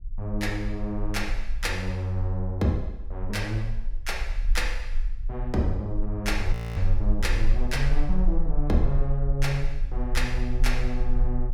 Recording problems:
rumble; below 38 Hz, strongest tone 18 Hz, SNR 2 dB
frozen audio; at 6.5 s

